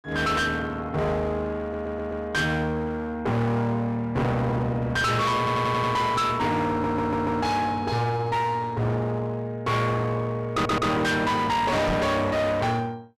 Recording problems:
distorted audio; hard clipping, uneven, signal-to-distortion ratio 5 dB
audio stuttering; 4 times, first at 1.5 s
microphone bump; at 12 s; peak +3 dB vs average level

